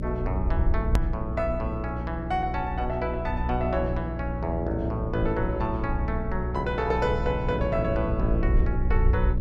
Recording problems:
electrical hum; 60 Hz, harmonics up to 600 Hz, SNR 3 dB
rumble; below 66 Hz, SNR 3 dB
hard cut with a click; at 1 s

